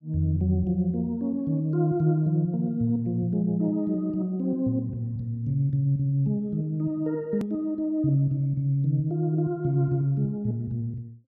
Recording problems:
hard cut with a click; at 7.5 s

